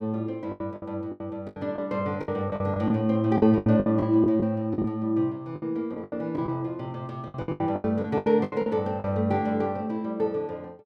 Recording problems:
packet loss; 14% of the sound replaced, filled with the last packet

